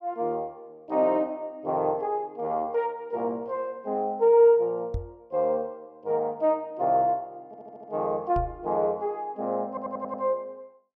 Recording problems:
microphone bump; at 5 s and at 8.5 s; peak -2 dB vs average level
audio stuttering; at 7.5 s and at 9.5 s

